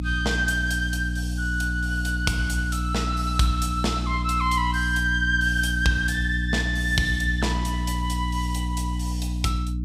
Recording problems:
hum; 60 Hz, harmonics up to 300 Hz, SNR 2 dB

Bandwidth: 15.5 kHz